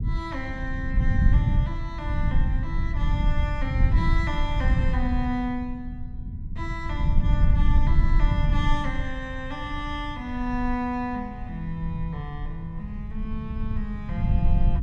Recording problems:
low-frequency rumble; below 90 Hz, SNR -5 dB

